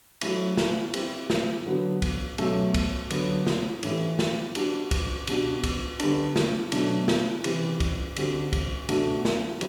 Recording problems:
hiss; slope -1 dB per octave, SNR 29 dB

